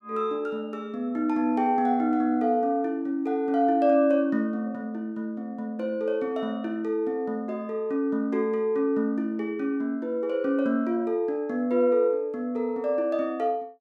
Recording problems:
none

